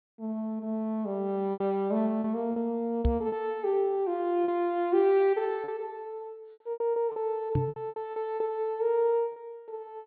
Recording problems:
treble missing; nothing above 4.4 kHz
lost packets; 9% of the sound replaced, filled with repeated pitch periods
microphone thump; at 3 s and at 7.5 s; peak +5 dB vs average level

